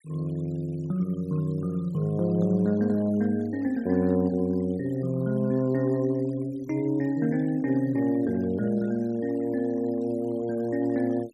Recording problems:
noise reduction artefacts; signal-to-artefact ratio 27 dB

